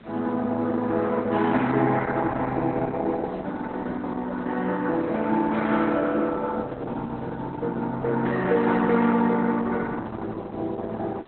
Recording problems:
lossy compression; Opus, log-spectral distance 3 dB, nothing above 4 kHz
background hiss; SNR 24 dB

